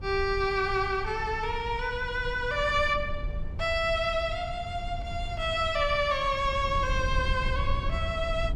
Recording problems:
wind on the microphone; below 84 Hz, SNR 8 dB

